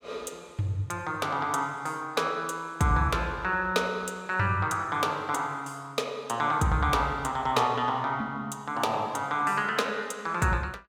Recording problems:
none

